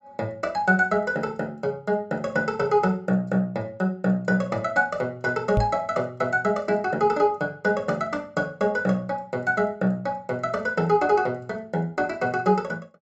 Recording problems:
knock on the microphone; at 5.5 s; peak +4 dB vs average level

